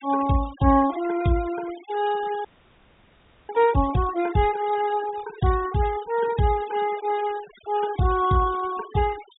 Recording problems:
treble missing; nothing above 4 kHz
denoising artefacts; signal-to-artefact ratio 18 dB
audio freezing; at 2.5 s for 1 s

